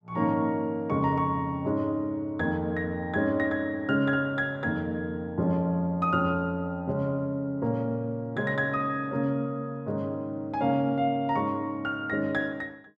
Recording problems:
none

